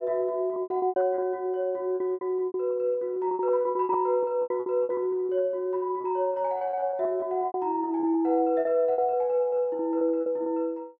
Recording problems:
lost packets; 15% of the sound replaced, filled with repeated pitch periods

